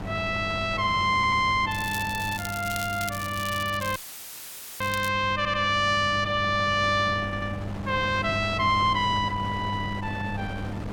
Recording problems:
electrical hum; 50 Hz, harmonics up to 600 Hz, SNR 11 dB
wind noise; below 690 Hz, SNR 14 dB
stutter; at 1 s, at 5.5 s and at 7 s
crackling; from 1.5 to 5 s; loose cable, SNR 13 dB
audio cutting out; at 4 s for 1 s; filled with static

